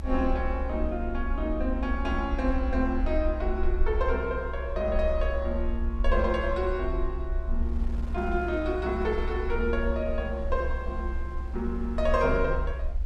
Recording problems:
rumble; below 64 Hz, SNR 3 dB
wind on the microphone; below 610 Hz, SNR 20 dB

